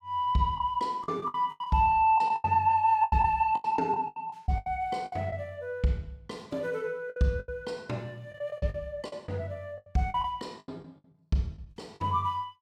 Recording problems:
lost packets; 12% of the sound replaced, filled with the last packet

